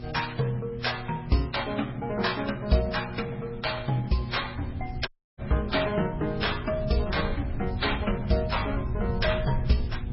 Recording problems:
lossy codec; MP3, then MP3, log-spectral distance 5 dB, nothing above 5.5 kHz
hum; 60 Hz, harmonics up to 840 Hz, SNR 12 dB
hiss; SNR 28 dB
wind on the microphone; below 100 Hz, SNR 9 dB
dropout; at 5 s

